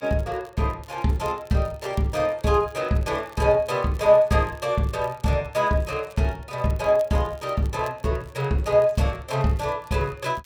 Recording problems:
crackle; vinyl, SNR 30 dB

